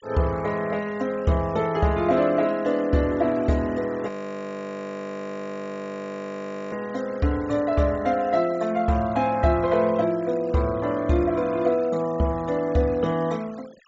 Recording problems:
treble cut off; nothing above 8 kHz
noise reduction artefacts; signal-to-artefact ratio 22 dB
frozen audio; at 4 s for 2.5 s

